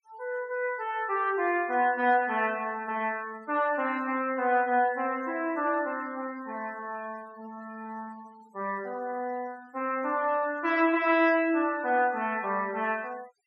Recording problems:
denoising artefacts; signal-to-artefact ratio 24 dB

